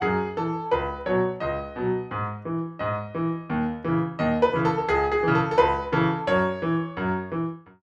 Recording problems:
none

